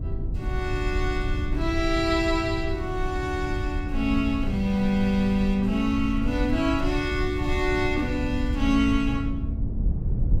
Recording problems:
rumble; below 98 Hz, SNR 5 dB

